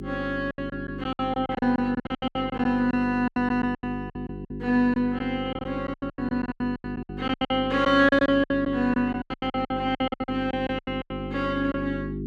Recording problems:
hum; 50 Hz, harmonics up to 400 Hz, SNR 10 dB
packet loss; 20% of the sound replaced, filled with silence

